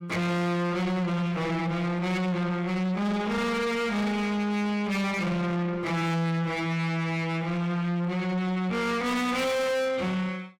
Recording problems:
distorted audio; soft clipping, signal-to-distortion ratio 7 dB

